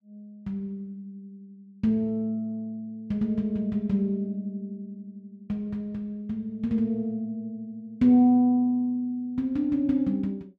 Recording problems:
none

